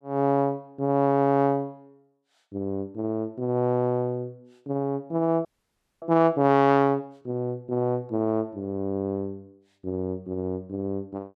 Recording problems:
frozen audio; at 5.5 s for 0.5 s

